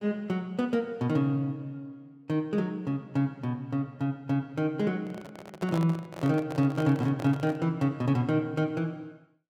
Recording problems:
microphone handling noise; from 5 to 7.5 s; peak -3 dB vs average level

